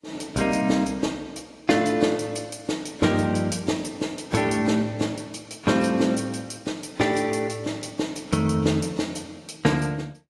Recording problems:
codec artefacts; AAC, log-spectral distance 4 dB

